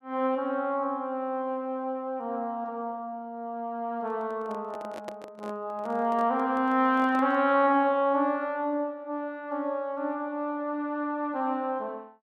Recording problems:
microphone handling noise; from 4 to 7.5 s; peak -7 dB vs average level

